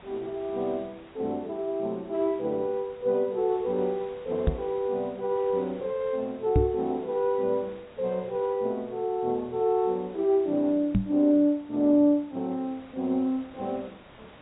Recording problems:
low-pass filter; nothing above 3.8 kHz
background hiss; SNR 24 dB
microphone bump; at 4.5 s, at 6.5 s and at 11 s; peak +7 dB vs average level

